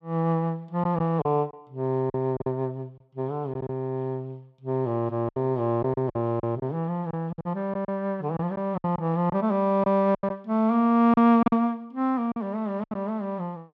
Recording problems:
lost packets; 8% of the sound replaced, filled with silence

